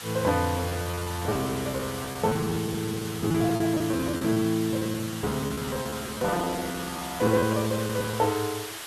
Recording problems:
hiss; SNR 9 dB
lost packets; 19% of the sound replaced, filled with repeated pitch periods

